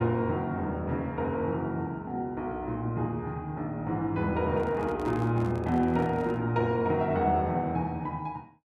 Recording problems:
handling noise; from 4.5 to 6.5 s; peak -11 dB vs average level

